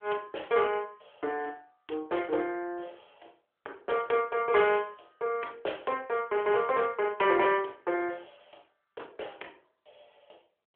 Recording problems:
phone line; 320 Hz to 3.3 kHz, AMR-NB

